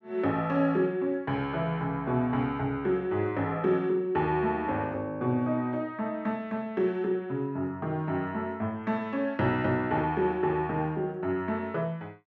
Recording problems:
none

